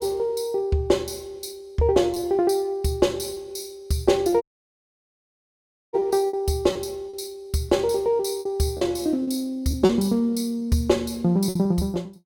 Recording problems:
lost packets; 6% of the sound replaced, filled with repeated pitch periods
audio cutting out; at 4.5 s for 1.5 s

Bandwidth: 17 kHz